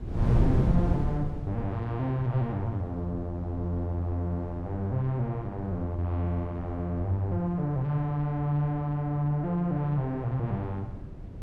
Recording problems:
wind on the microphone; below 180 Hz, SNR 6 dB

